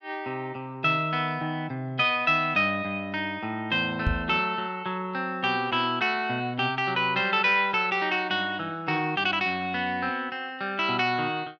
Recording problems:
microphone bump; at 4 s; peak +3 dB vs average level

